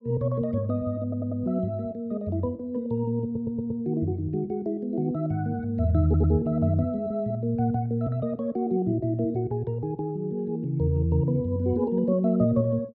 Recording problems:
stutter; at 1 s, at 3 s and at 6 s

